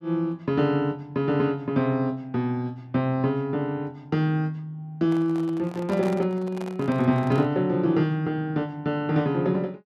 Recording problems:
microphone handling noise; from 5 to 7.5 s; peak -8 dB vs average level

